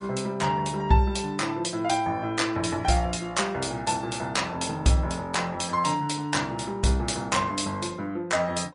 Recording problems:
codec artefacts; MP3, log-spectral distance 4 dB, nothing above 10.4 kHz

